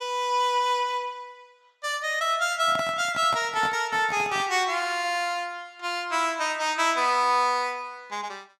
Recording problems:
microphone handling noise; from 2.5 to 4.5 s; peak -5 dB vs average level

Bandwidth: 15 kHz